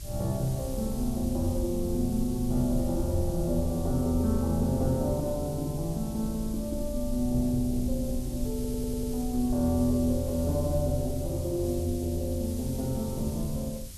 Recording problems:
hiss; SNR 15 dB
rumble; below 64 Hz, SNR 10 dB
stutter; at 8.5 s

